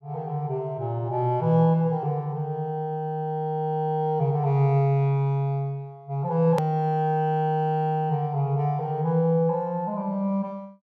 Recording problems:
edit click; at 6.5 s

